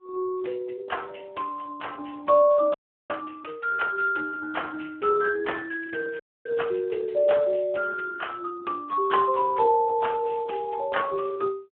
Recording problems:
phone line; 320 Hz to 3.1 kHz, Speex
frozen audio; at 2.5 s and at 6 s
crackling; at 6 s; loose cable, SNR 27 dB

